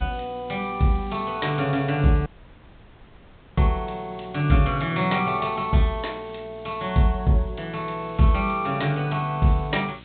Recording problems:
treble missing; nothing above 4 kHz
electrical hum; 60 Hz, harmonics up to 960 Hz, SNR 23 dB
hiss; SNR 27 dB
dropout; at 2.5 s for 1.5 s

